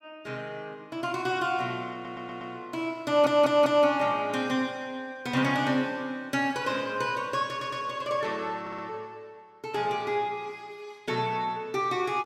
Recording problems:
stutter; 4 times, first at 2 s

